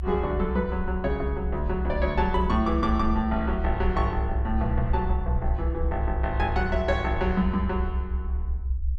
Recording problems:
rumble; below 68 Hz, strongest tone 66 Hz, SNR 2 dB

